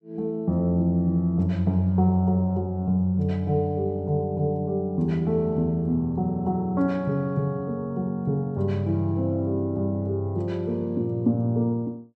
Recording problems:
none

